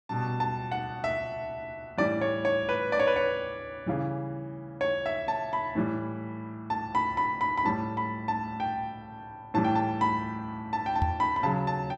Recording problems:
microphone thump; at 11 s; peak +5 dB vs average level

